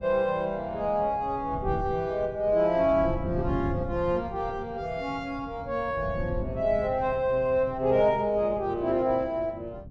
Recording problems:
wind noise; below 180 Hz, SNR 12 dB

